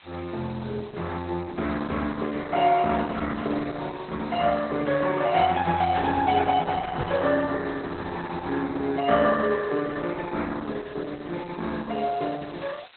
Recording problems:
lossy compression; Opus, log-spectral distance 12 dB
background hiss; SNR 23 dB
microphone bump; at 7 s; peak +3 dB vs average level

